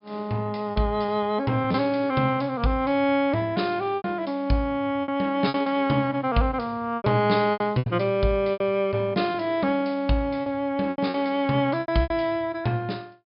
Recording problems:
treble cut off; nothing above 5.5 kHz
lost packets; 8% of the sound replaced, filled with repeated pitch periods

